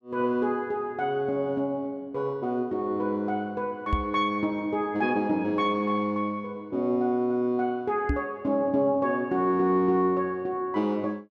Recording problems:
microphone thump; at 4 s and at 8 s; peak +4 dB vs average level

